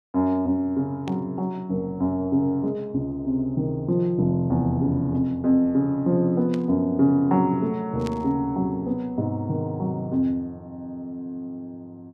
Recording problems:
static burst; at 1 s, at 6.5 s and at 8 s; peak -10 dB vs average level

